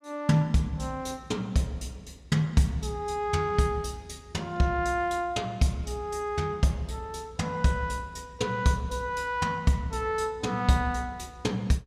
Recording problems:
none

